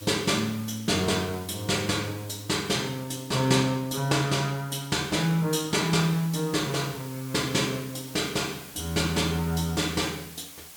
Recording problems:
hiss; slope 0 dB per octave, SNR 17 dB

